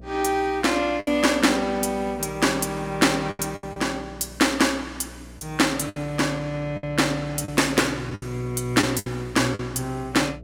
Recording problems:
electrical hum; 60 Hz, harmonics up to 660 Hz, SNR 20 dB
lost packets; 6% of the sound replaced, filled with the last packet

